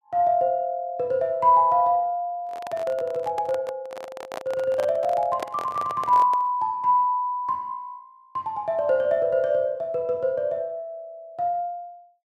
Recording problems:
microphone handling noise; from 2.5 to 6.5 s; peak -2 dB vs average level

